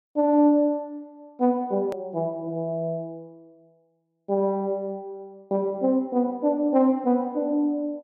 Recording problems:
click at an edit; at 2 s

